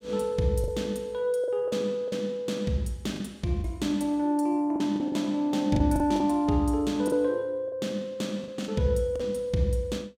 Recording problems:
packet loss; 7% of the sound replaced, filled with the last packet

